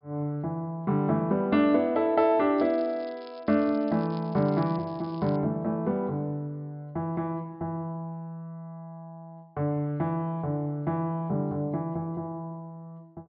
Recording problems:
treble missing; nothing above 5.5 kHz
crackle; from 2.5 to 5.5 s; loose cable, SNR 27 dB

